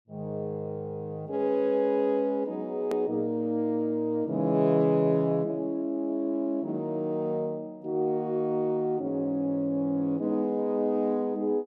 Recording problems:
hard cut with a click; at 3 s

